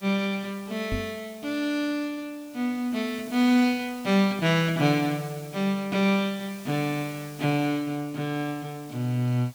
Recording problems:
hiss; SNR 21 dB
knock on the microphone; at 1 s; peak -1 dB vs average level

